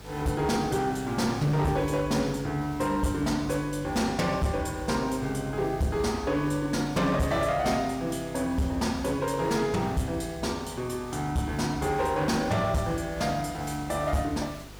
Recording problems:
distorted audio; hard clipping, uneven, signal-to-distortion ratio 11 dB
mains hum; 50 Hz, harmonics up to 500 Hz, SNR 17 dB
background hiss; slope -2 dB per octave, SNR 20 dB

